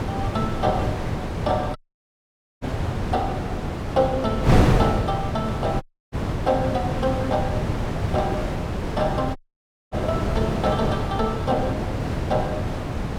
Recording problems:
wind on the microphone; below 450 Hz, SNR 0 dB
audio cutting out; at 2 s for 1 s, at 6 s and at 9.5 s for 0.5 s

